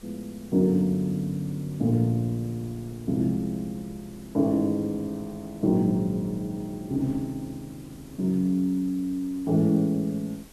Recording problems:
background hiss; slope -1 dB per octave, SNR 26 dB
wind on the microphone; below 440 Hz, SNR 26 dB

